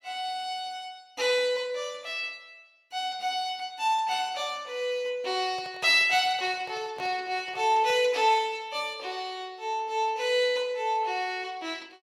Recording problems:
handling noise; from 5.5 to 8 s; peak -11 dB vs average level

